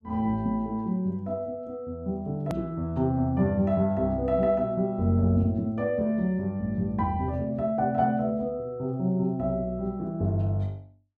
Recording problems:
edit click; at 2.5 s

